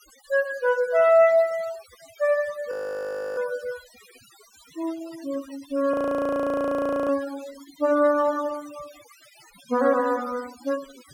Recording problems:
noise reduction artefacts; signal-to-artefact ratio 20 dB
audio freezing; at 2.5 s for 0.5 s and at 6 s for 1 s

